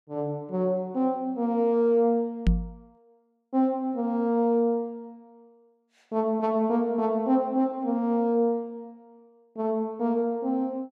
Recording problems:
knock on the microphone; at 2.5 s; peak +7 dB vs average level

